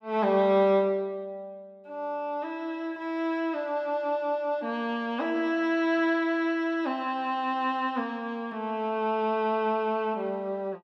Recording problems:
none

